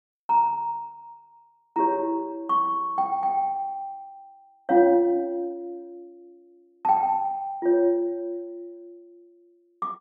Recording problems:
none

